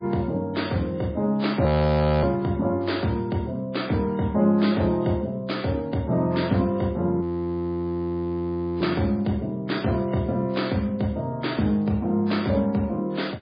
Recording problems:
lossy compression; MP3, log-spectral distance 3 dB, nothing above 4.8 kHz
frozen audio; at 1.5 s for 0.5 s and at 7 s for 1.5 s

